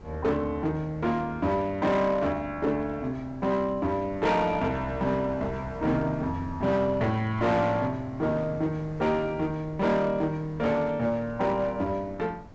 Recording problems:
treble missing; nothing above 8 kHz
distorted audio; hard clipping, uneven, signal-to-distortion ratio 10 dB
wind noise; below 410 Hz, SNR 19 dB

